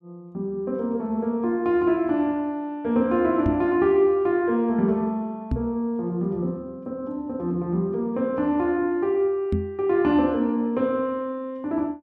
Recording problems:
knock on the microphone; at 3.5 s, at 5.5 s and at 9.5 s; peak +2 dB vs average level

